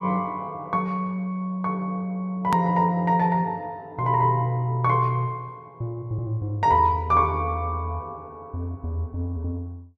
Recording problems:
click at an edit; at 2.5 s

